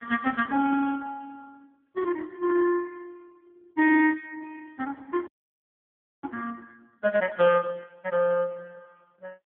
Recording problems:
telephone audio; 240 Hz to 3 kHz, AMR-NB
frozen audio; at 5.5 s for 1 s

